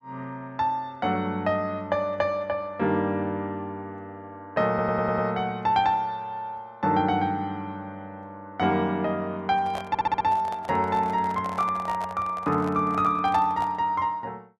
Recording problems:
stutter; at 4.5 s and at 10 s
handling noise; from 9.5 to 14 s; peak -5 dB vs average level

